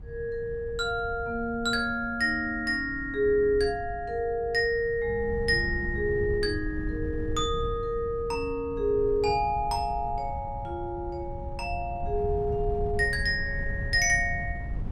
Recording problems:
wind on the microphone; below 110 Hz, SNR 10 dB

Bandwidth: 15.5 kHz